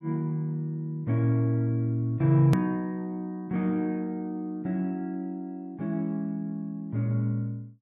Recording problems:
edit click; at 2.5 s

